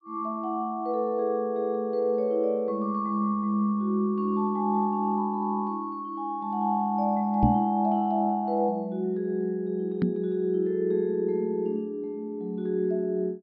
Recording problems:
treble cut off; nothing above 5.3 kHz
microphone bump; at 7.5 s and at 10 s; peak +7 dB vs average level

